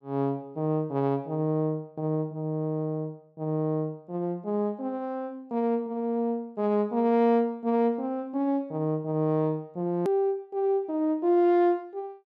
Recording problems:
hard cut with a click; at 10 s

